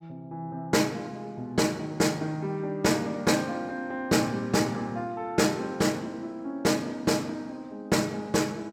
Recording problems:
none

